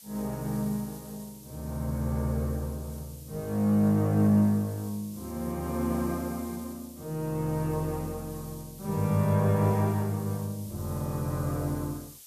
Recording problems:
hiss; SNR 18 dB

